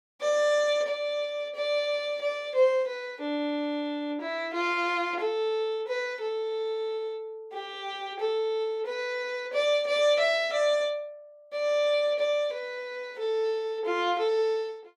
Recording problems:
none

